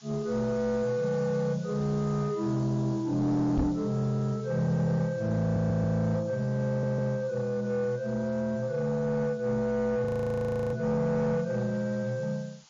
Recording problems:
lossy compression; MP3, then MP3, log-spectral distance 4 dB, nothing above 13.1 kHz
distortion; soft clipping, signal-to-distortion ratio 11 dB
hiss; SNR 27 dB
microphone bump; at 3.5 s; peak +4 dB vs average level
stutter; at 5.5 s and at 6.5 s
frozen audio; at 10 s for 0.5 s

